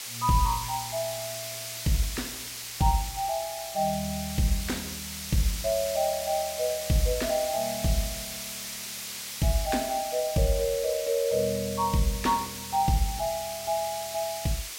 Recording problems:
hiss; slope +2 dB per octave, SNR 6 dB

